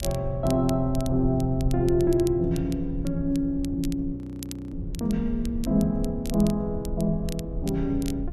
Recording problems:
rumble; below 82 Hz, SNR 10 dB
crackling; vinyl, SNR 18 dB
audio freezing; at 4 s for 0.5 s

